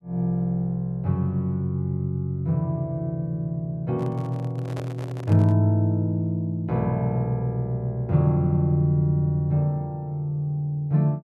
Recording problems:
microphone handling noise; from 4 to 5.5 s; peak -8 dB vs average level

